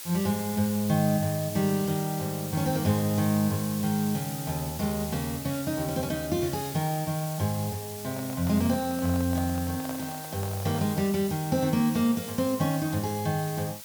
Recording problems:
background hiss; slope +2 dB per octave, SNR 10 dB
microphone handling noise; from 8 to 11 s; peak -6 dB vs average level

